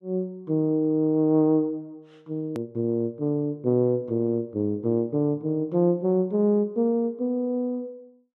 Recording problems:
edit click; at 2.5 s

